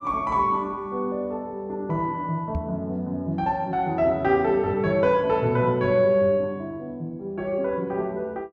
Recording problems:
microphone bump; at 2.5 s; peak -1 dB vs average level

